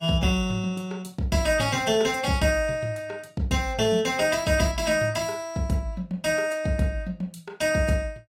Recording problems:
lossy compression; AAC, log-spectral distance 2 dB, nothing above 15.5 kHz

